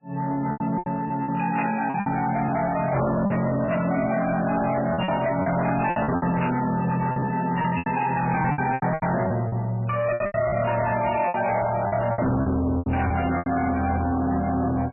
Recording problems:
lossy codec; MP3, log-spectral distance 4 dB, nothing above 2.7 kHz
distorted audio; soft clipping, signal-to-distortion ratio 8 dB
packet loss; 11% of the sound replaced, filled with repeated pitch periods
static burst; at 1.5 s and at 6.5 s; peak -3 dB vs average level

